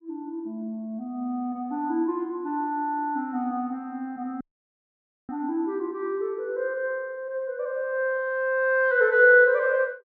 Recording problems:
audio cutting out; at 4.5 s for 1 s

